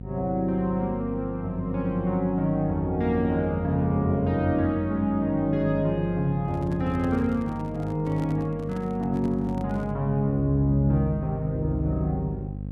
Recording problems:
electrical hum; 50 Hz, harmonics up to 550 Hz, SNR 10 dB
microphone handling noise; from 6.5 to 10 s; peak -8 dB vs average level

